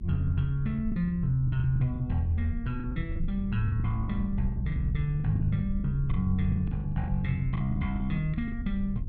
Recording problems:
rumble; below 78 Hz, SNR 6 dB
packet loss; 13% of the sound replaced, filled with the last packet

